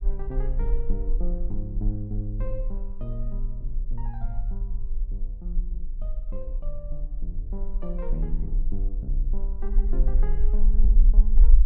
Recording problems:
low-frequency rumble; below 38 Hz, strongest tone 26 Hz, SNR -9 dB

